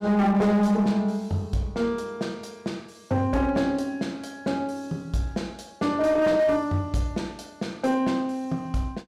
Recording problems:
distortion; hard clipping, signal-to-distortion ratio 11 dB

